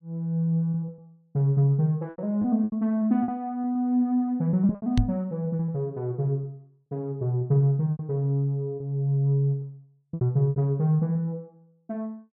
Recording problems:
lost packets; 8% of the sound replaced, filled with repeated pitch periods
microphone thump; at 5 s; peak +6 dB vs average level

